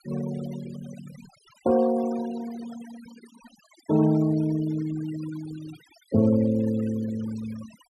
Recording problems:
denoising artefacts; signal-to-artefact ratio 17 dB

